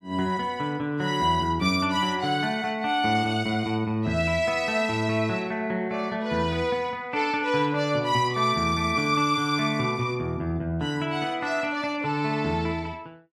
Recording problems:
none

